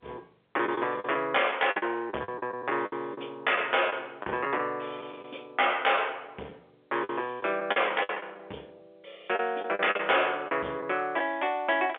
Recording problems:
phone line; 280 Hz to 3.4 kHz, G.711
distortion; soft clipping, signal-to-distortion ratio 11 dB
packet loss; 9% of the sound replaced, filled with the last packet

